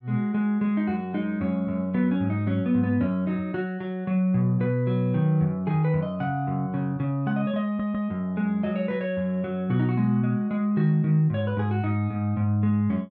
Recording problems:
audio stuttering; at 7.5 s

